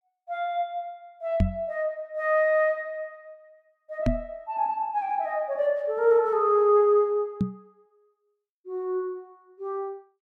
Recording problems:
knock on the microphone; at 1.5 s, at 4 s and at 7.5 s; peak +6 dB vs average level

